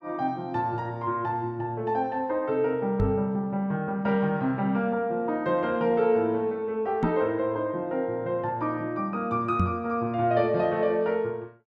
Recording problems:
knock on the microphone; at 3 s, at 7 s and at 9.5 s; peak +4 dB vs average level

